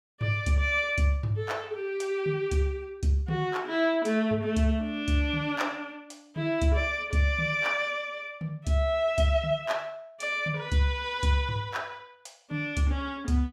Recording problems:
none

